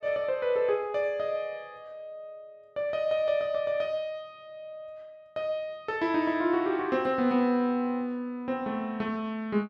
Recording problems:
none

